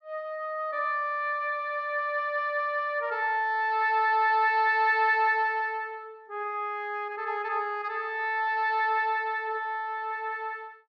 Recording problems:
treble cut off; nothing above 7.5 kHz

